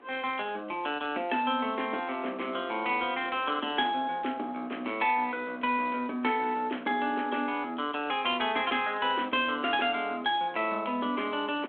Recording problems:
telephone audio; 220 Hz to 3.4 kHz, G.726
wind on the microphone; below 1.2 kHz, SNR 22 dB

